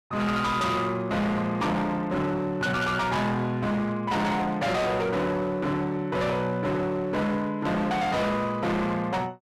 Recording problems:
distorted audio; hard clipping, signal-to-distortion ratio 7 dB

